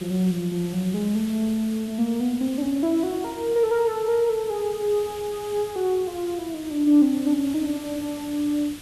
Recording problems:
background hiss; SNR 17 dB

